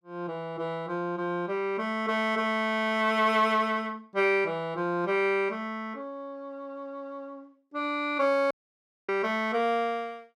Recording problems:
dropout; at 8.5 s for 0.5 s

